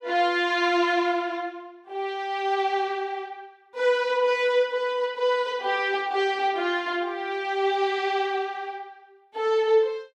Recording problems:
none

